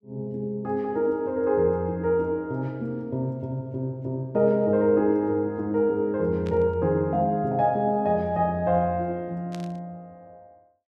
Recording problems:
static burst; at 6.5 s and at 9.5 s; peak -13 dB vs average level

